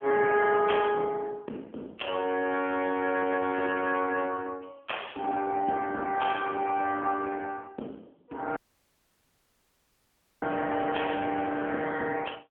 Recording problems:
telephone audio; 240 Hz to 3.3 kHz, AMR-NB
audio cutting out; at 8.5 s for 2 s

